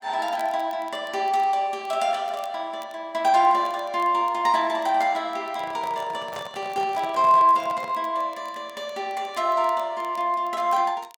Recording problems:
crackling; vinyl, SNR 29 dB
handling noise; from 5.5 to 8 s; peak -8 dB vs average level

